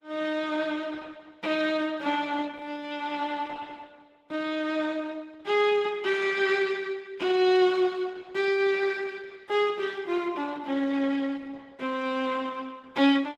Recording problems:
codec artefacts; Opus, log-spectral distance 3 dB

